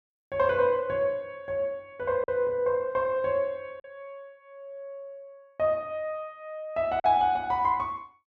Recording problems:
packet loss; 1.6% of the sound replaced, filled with silence

